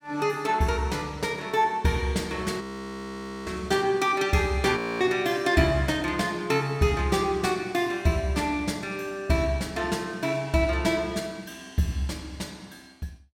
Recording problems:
frozen audio; at 2.5 s for 1 s and at 5 s

